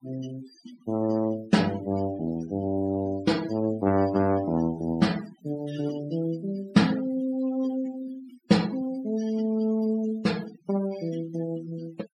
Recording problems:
denoising artefacts; signal-to-artefact ratio 18 dB

